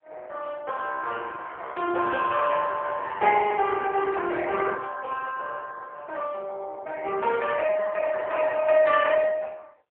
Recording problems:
telephone audio; 320 Hz to 3.6 kHz, AMR-NB

